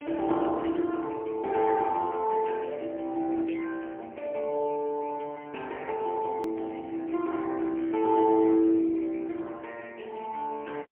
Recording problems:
telephone audio; 220 Hz to 2.6 kHz, AMR-NB, then MP3
edit click; at 6.5 s

